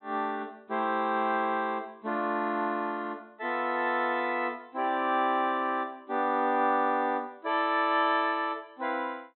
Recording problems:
treble cut off; nothing above 4 kHz

